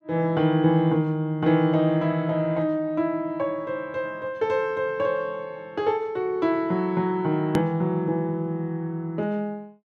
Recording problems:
click at an edit; at 7.5 s

